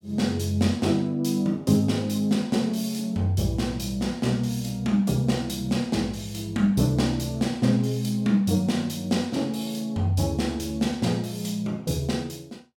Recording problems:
none

